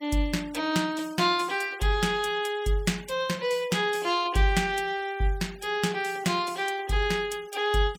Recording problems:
denoising artefacts; signal-to-artefact ratio 23 dB

